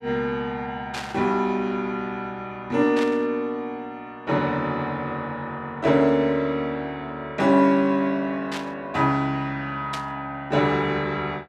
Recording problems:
static burst; 4 times, first at 1 s; peak -4 dB vs average level

